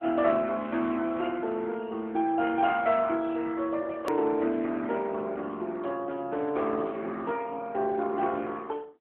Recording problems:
telephone audio; 220 Hz to 3.6 kHz, AMR-NB
click at an edit; at 4 s

